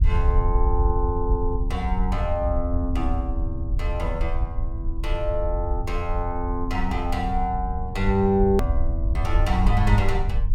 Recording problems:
low-frequency rumble; below 70 Hz, SNR 0 dB
edit click; at 8.5 s

